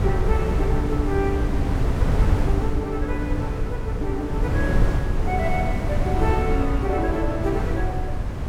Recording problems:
wind on the microphone; below 130 Hz, SNR -3 dB

